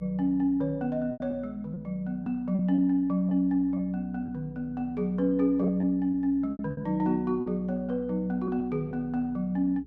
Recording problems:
hum; 60 Hz, harmonics up to 420 Hz, SNR 22 dB
packet loss; 6% of the sound replaced, filled with repeated pitch periods

